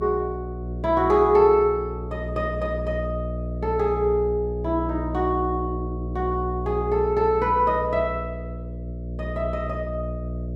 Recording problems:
electrical hum; 60 Hz, harmonics up to 660 Hz, SNR 8 dB

